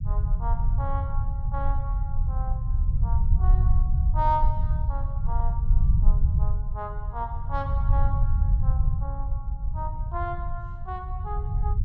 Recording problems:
rumble; below 76 Hz, SNR -8 dB

